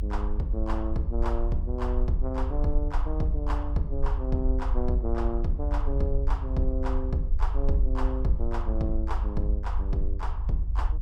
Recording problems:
hum; 50 Hz, harmonics up to 350 Hz, SNR 14 dB
low-frequency rumble; below 52 Hz, SNR -3 dB

